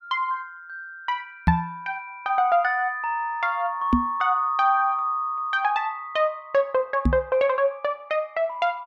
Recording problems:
microphone bump; at 1.5 s, at 4 s and at 7 s; peak +8 dB vs average level

